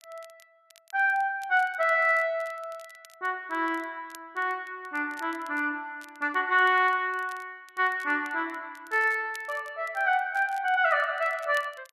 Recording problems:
crackling; vinyl, SNR 27 dB

